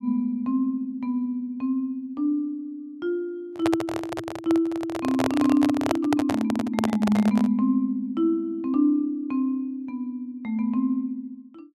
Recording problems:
handling noise; from 3.5 to 7.5 s; peak +4 dB vs average level

